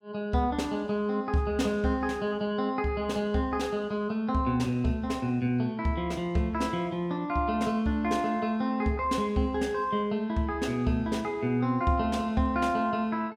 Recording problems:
none

